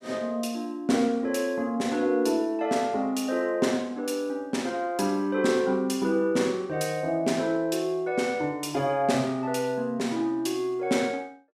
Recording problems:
none

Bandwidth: 14.5 kHz